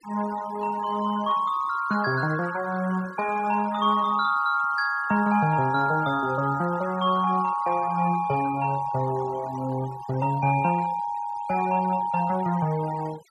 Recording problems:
noise reduction artefacts; signal-to-artefact ratio 19 dB

